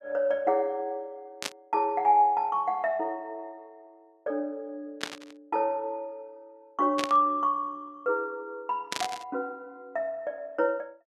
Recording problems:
static burst; 4 times, first at 1.5 s; peak +2 dB vs average level

